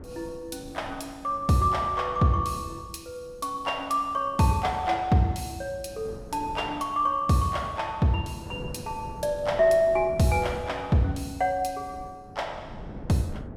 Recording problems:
wind on the microphone; below 330 Hz, SNR 18 dB

